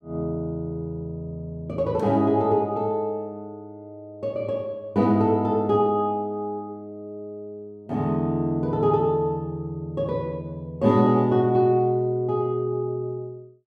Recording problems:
none

